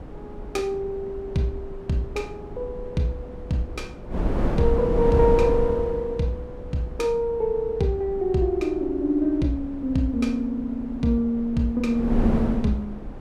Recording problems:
wind on the microphone; below 300 Hz, SNR 7 dB

